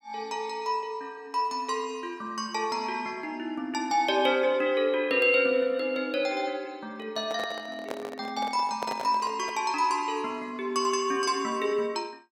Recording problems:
microphone handling noise; from 7 to 9.5 s; peak -3 dB vs average level

